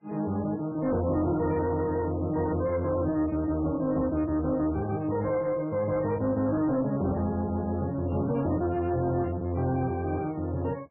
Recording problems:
lossy compression; MP3, log-spectral distance 2 dB, nothing above 2.4 kHz
distortion; soft clipping, signal-to-distortion ratio 12 dB

